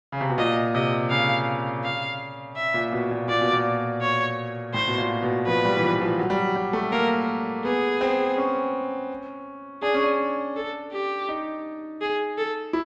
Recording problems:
none

